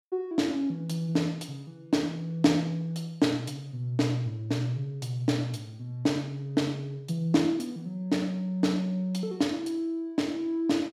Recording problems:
none

